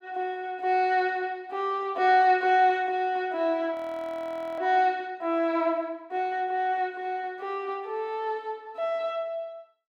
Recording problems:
audio freezing; at 3.5 s for 1 s

